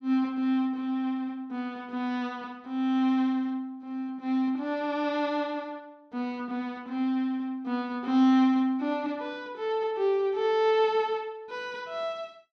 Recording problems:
none

